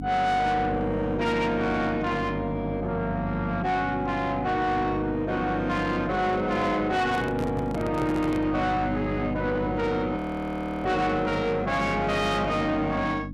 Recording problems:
distorted audio; soft clipping, signal-to-distortion ratio 11 dB
hum; 50 Hz, harmonics up to 500 Hz, SNR 7 dB
handling noise; from 7 to 8.5 s; peak -2 dB vs average level
audio freezing; at 10 s for 0.5 s

